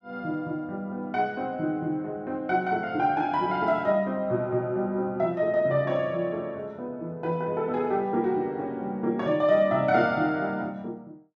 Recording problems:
none

